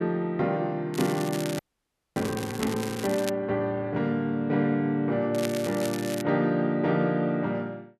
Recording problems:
crackling; from 1 to 3.5 s and at 5.5 s; loose cable, SNR 12 dB
frozen audio; at 1.5 s for 0.5 s

